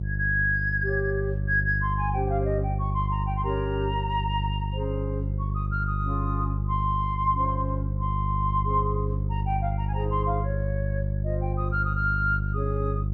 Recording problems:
electrical hum; 50 Hz, harmonics up to 350 Hz, SNR 0 dB

